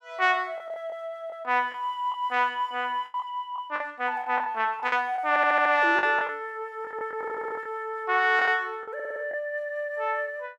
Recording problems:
lost packets; 8% of the sound replaced, filled with the last packet
stutter; at 5.5 s, at 7 s and at 9 s

